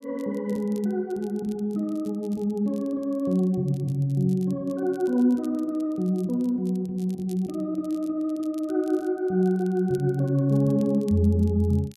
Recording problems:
crackling; vinyl, SNR 29 dB

